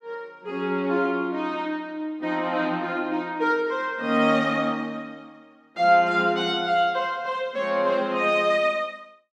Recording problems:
none

